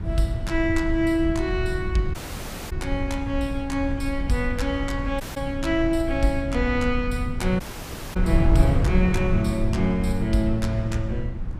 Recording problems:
rumble; below 98 Hz, SNR 8 dB
wind on the microphone; below 120 Hz, SNR 6 dB
dropout; at 2 s for 0.5 s, at 5 s and at 7.5 s for 0.5 s

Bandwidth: 15 kHz